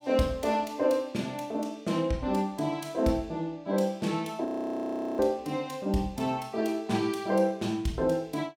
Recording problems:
audio freezing; at 4.5 s for 0.5 s

